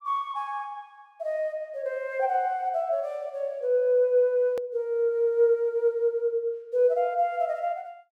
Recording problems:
hard cut with a click; at 4.5 s

